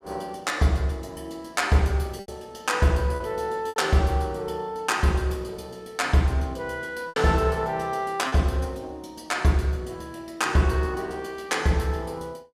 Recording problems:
packet loss; 3% of the sound replaced, filled with repeated pitch periods

